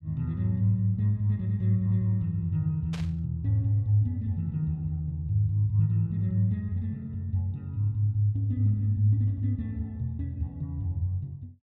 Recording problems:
static burst; at 3 s; peak -10 dB vs average level

